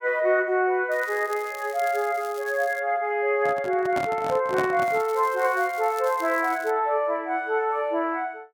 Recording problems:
crackle; from 1 to 3 s and from 5 to 6.5 s; loose cable, SNR 21 dB
handling noise; from 3.5 to 5 s; peak -1 dB vs average level

